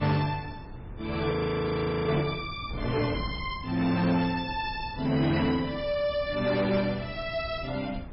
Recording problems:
lossy codec; MP3, log-spectral distance 4 dB, nothing above 5.3 kHz
distorted audio; soft clipping, signal-to-distortion ratio 11 dB
wind noise; below 210 Hz, SNR 14 dB
frozen audio; at 1.5 s for 1 s

